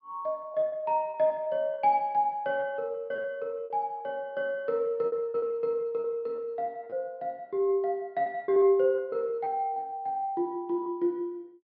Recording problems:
treble cut off; nothing above 5.2 kHz
packet loss; 9% of the sound replaced, filled with repeated pitch periods

